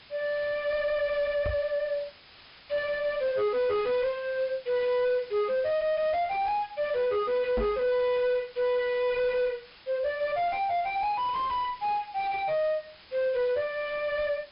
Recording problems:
treble cut off; nothing above 5.5 kHz
distorted audio; soft clipping, signal-to-distortion ratio 7 dB
hiss; SNR 23 dB
microphone bump; at 1.5 s and at 7.5 s; peak +2 dB vs average level

